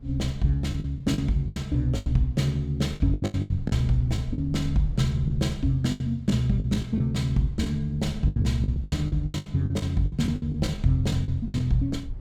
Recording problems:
rumble; below 80 Hz, SNR 15 dB
packet loss; 15% of the sound replaced, filled with the last packet

